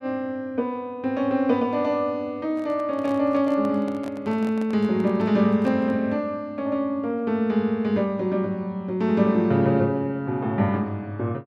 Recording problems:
handling noise; from 2.5 to 6 s; peak -10 dB vs average level

